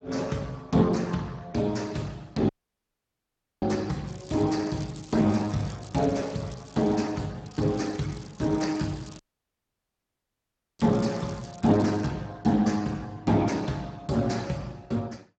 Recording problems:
lossy compression; Speex, log-spectral distance 5 dB, nothing above 7.6 kHz
dropout; at 2.5 s for 1 s and at 9 s for 1.5 s
crackle; from 4 to 7 s and from 7.5 to 12 s; loose cable, SNR 22 dB

